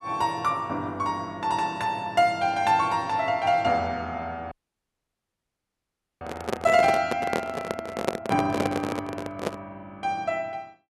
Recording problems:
audio cutting out; at 4.5 s for 1.5 s
microphone handling noise; from 6 to 9.5 s; peak +5 dB vs average level

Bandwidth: 12.5 kHz